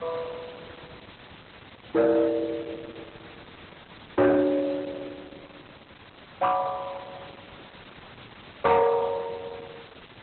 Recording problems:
codec artefacts; Opus, log-spectral distance 20 dB, nothing above 4 kHz
distortion; soft clipping, signal-to-distortion ratio 11 dB
hiss; SNR 21 dB

